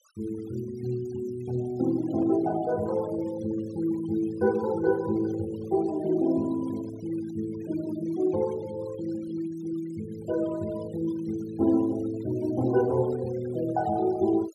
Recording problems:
denoising artefacts; signal-to-artefact ratio 20 dB

